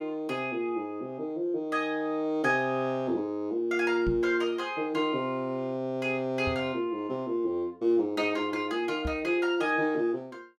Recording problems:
microphone bump; at 4 s, at 6.5 s and at 9 s; peak -1 dB vs average level

